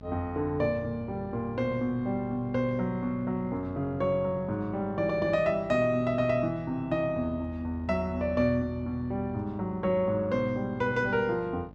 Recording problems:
hum; 50 Hz, harmonics up to 1.2 kHz, SNR 19 dB

